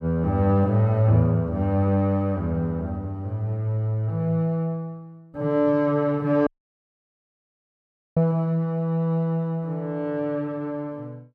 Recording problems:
dropout; at 6.5 s for 1.5 s

